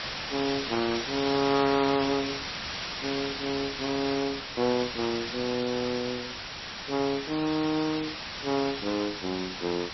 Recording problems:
codec artefacts; MP3, log-spectral distance 19 dB, nothing above 5.7 kHz
hiss; slope 0 dB per octave, SNR 4 dB

